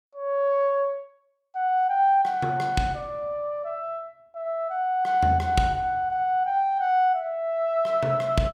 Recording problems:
none

